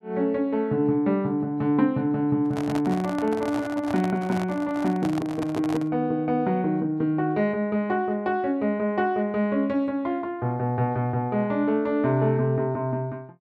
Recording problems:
microphone handling noise; from 2.5 to 6 s; peak -4 dB vs average level

